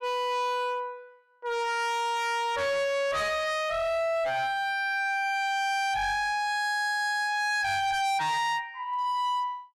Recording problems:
distorted audio; hard clipping, signal-to-distortion ratio 7 dB

